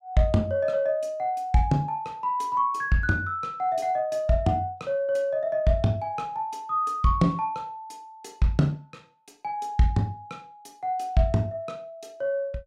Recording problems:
none

